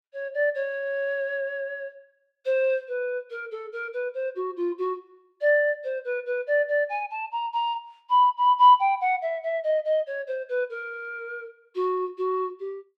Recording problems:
none

